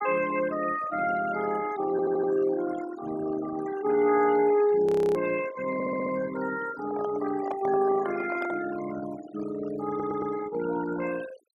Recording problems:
denoising artefacts; signal-to-artefact ratio 13 dB
audio stuttering; at 2 s, at 5.5 s and at 10 s
frozen audio; at 5 s
handling noise; from 6.5 to 8.5 s; peak -2 dB vs average level

